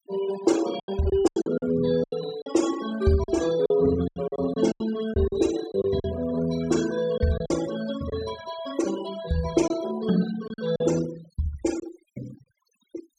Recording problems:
noise reduction artefacts; signal-to-artefact ratio 14 dB
lost packets; 9% of the sound replaced, filled with silence

